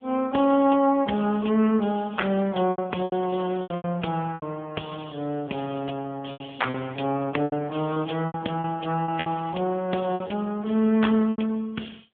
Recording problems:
telephone audio; 190 Hz to 3.4 kHz, AMR-NB
packet loss; 9% of the sound replaced, filled with repeated pitch periods

